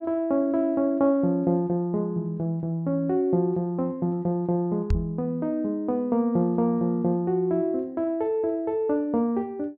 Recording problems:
knock on the microphone; at 5 s; peak +3 dB vs average level

